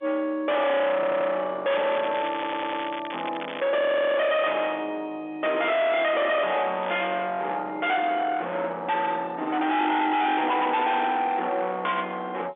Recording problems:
phone line; 260 Hz to 3.6 kHz, G.711
distortion; soft clipping, signal-to-distortion ratio 6 dB
stutter; at 1 s, at 2.5 s and at 4 s
crackling; from 1.5 to 3.5 s and at 7 s; loose cable, SNR 12 dB

